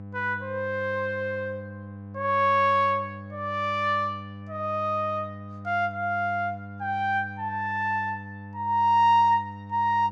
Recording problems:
hum; 50 Hz, harmonics up to 1 kHz, SNR 15 dB

